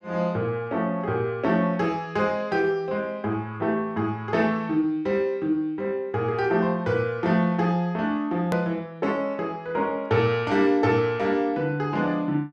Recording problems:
click at an edit; at 8.5 s

